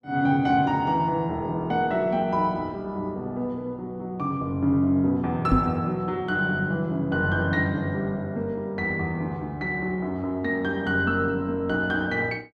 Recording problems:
microphone bump; at 5.5 s; peak +7 dB vs average level

